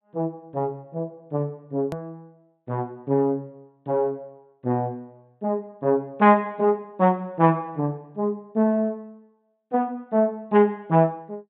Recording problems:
low-pass filter; nothing above 4 kHz
edit click; at 2 s

